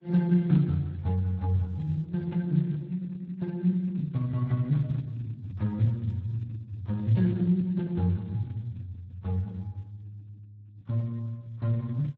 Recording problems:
lossy codec; Vorbis, then Speex, log-spectral distance 2 dB, nothing above 13.1 kHz

